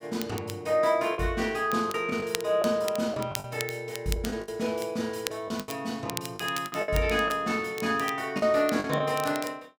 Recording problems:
crackling; vinyl, SNR 12 dB
lost packets; 8% of the sound replaced, filled with the last packet

